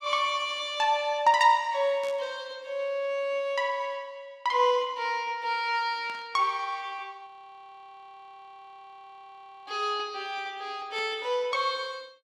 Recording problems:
burst of static; at 2 s, at 6 s and at 11 s; peak -13 dB vs average level
audio freezing; at 7.5 s for 2.5 s

